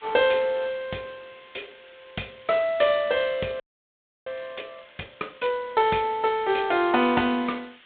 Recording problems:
telephone audio; 220 Hz to 3.8 kHz, G.726
hiss; SNR 27 dB
frozen audio; at 3.5 s for 0.5 s

